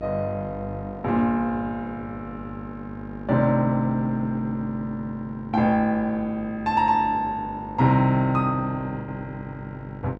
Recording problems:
hum; 50 Hz, harmonics up to 1.4 kHz, SNR 15 dB
packet loss; 1.2% of the sound replaced, filled with the last packet

